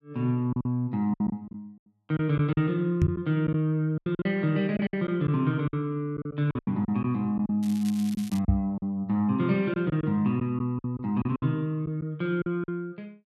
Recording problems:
lost packets; 10% of the sound replaced, filled with silence
microphone thump; at 3 s and at 8.5 s; peak +8 dB vs average level
crackle; at 7.5 s; loose cable, SNR 18 dB

